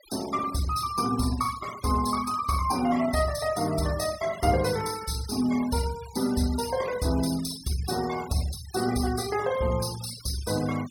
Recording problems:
noise reduction artefacts; signal-to-artefact ratio 15 dB

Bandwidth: 17 kHz